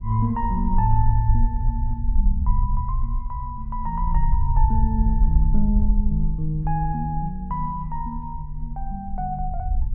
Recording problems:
low-frequency rumble; below 54 Hz, SNR -1 dB

